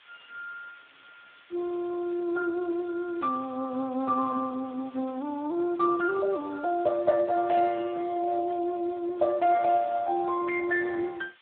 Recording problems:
telephone audio; 300 Hz to 2.8 kHz, Speex
background hiss; SNR 27 dB

